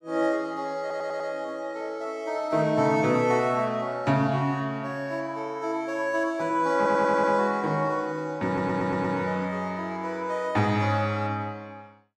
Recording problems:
audio stuttering; at 1 s, at 7 s and at 8.5 s

